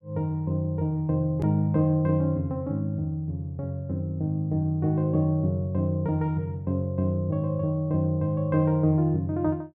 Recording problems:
click at an edit; at 1.5 s

